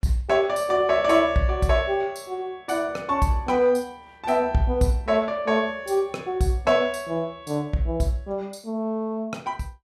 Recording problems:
none

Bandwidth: 14.5 kHz